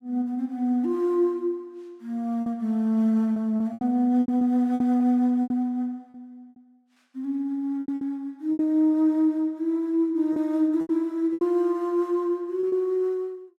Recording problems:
lost packets; 8% of the sound replaced, filled with repeated pitch periods

